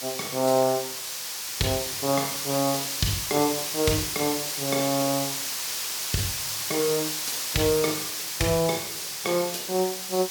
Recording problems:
background hiss; slope +3 dB per octave, SNR 2 dB

